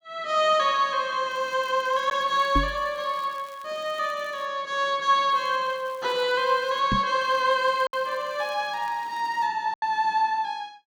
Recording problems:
packet loss; 1.4% of the sound replaced, filled with silence
crackling; from 1.5 to 4.5 s, from 5.5 to 7 s and from 7 to 9.5 s; loose cable, SNR 28 dB
microphone thump; at 2.5 s and at 7 s; peak +2 dB vs average level

